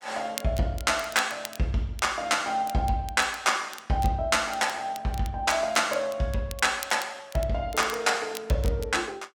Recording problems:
crackling; vinyl, SNR 17 dB

